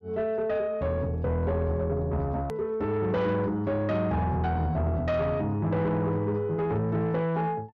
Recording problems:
low-pass filter; nothing above 8 kHz
distortion; soft clipping, signal-to-distortion ratio 12 dB
edit click; at 2.5 s

